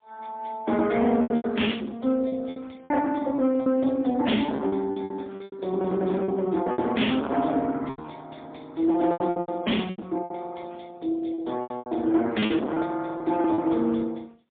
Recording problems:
phone line; 170 Hz to 3.5 kHz, AMR-NB, then MP3
distortion; hard clipping, uneven, signal-to-distortion ratio 6 dB
packet loss; 12% of the sound replaced, filled with repeated pitch periods

